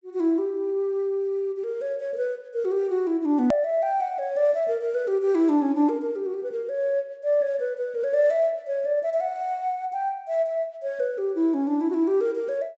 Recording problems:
low-pass filter; nothing above 8 kHz
click at an edit; at 3.5 s

